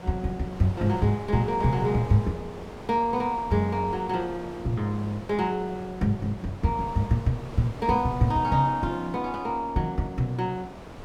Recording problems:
wind noise; below 870 Hz, SNR 14 dB

